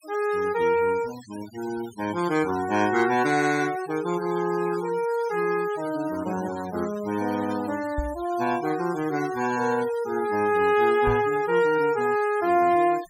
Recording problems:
noise reduction artefacts; signal-to-artefact ratio 17 dB
knock on the microphone; at 8 s and at 11 s; peak -1 dB vs average level

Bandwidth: 16 kHz